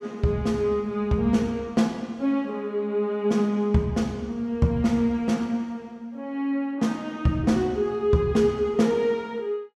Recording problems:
none

